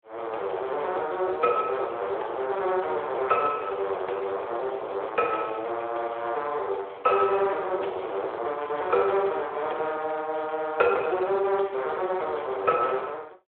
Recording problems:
telephone audio; 320 Hz to 3.4 kHz, Speex

